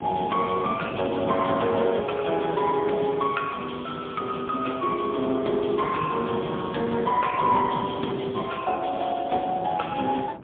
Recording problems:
phone line; 190 Hz to 3.5 kHz, AMR-NB, then MP3
wind noise; below 370 Hz, SNR 12 dB
crackle; from 2 to 4.5 s and at 5 s; loose cable, SNR 27 dB

